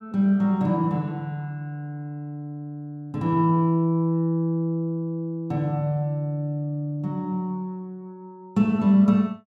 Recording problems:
none

